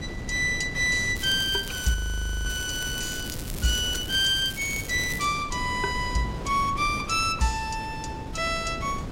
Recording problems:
wind noise; below 320 Hz, SNR 11 dB
crackling; at 1 s and from 2.5 to 5.5 s; loose cable, SNR 13 dB
audio freezing; at 2 s for 0.5 s

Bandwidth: 16 kHz